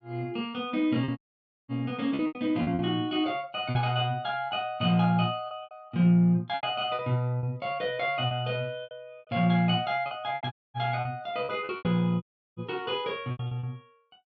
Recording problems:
lost packets; 10% of the sound replaced, filled with repeated pitch periods
dropout; at 1 s for 0.5 s, at 11 s and at 12 s

